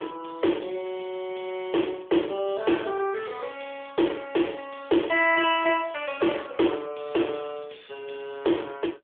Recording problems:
telephone audio; 300 Hz to 3.4 kHz, AMR-NB

